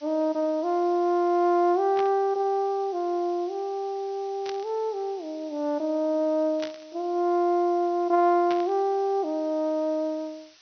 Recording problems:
treble missing; nothing above 6.2 kHz
background hiss; slope +3 dB per octave, SNR 27 dB
burst of static; 4 times, first at 2 s; peak -8 dB vs average level

